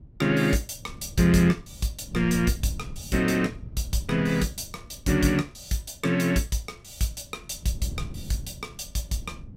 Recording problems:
wind on the microphone; below 150 Hz, SNR 16 dB

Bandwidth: 16 kHz